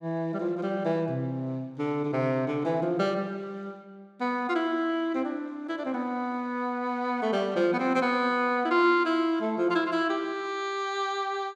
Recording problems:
none

